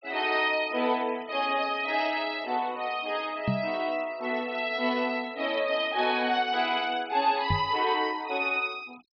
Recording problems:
low-pass filter; nothing above 5.5 kHz
denoising artefacts; signal-to-artefact ratio 23 dB
knock on the microphone; at 3.5 s and at 7.5 s; peak +3 dB vs average level

